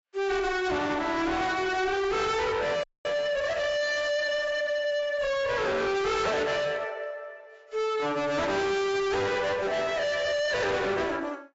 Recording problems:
lossy codec; AAC, log-spectral distance 3 dB, nothing above 7.6 kHz
distorted audio; hard clipping, signal-to-distortion ratio 6 dB
frozen audio; at 3 s

